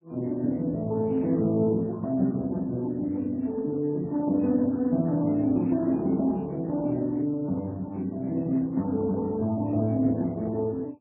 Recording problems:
codec artefacts; Speex, then MP3, log-spectral distance 2 dB, nothing above 7.8 kHz

